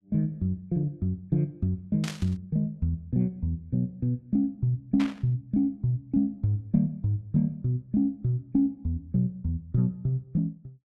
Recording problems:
static burst; at 2 s and at 5 s; peak -4 dB vs average level

